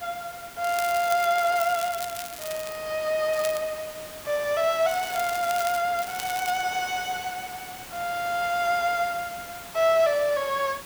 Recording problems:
background hiss; slope -2 dB per octave, SNR 15 dB
crackling; 4 times, first at 0.5 s; loose cable, SNR 11 dB

